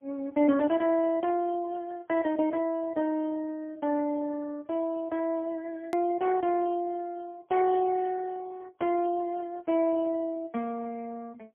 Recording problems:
telephone audio; 190 Hz to 3.1 kHz, AMR-NB, then MP3
edit click; at 6 s

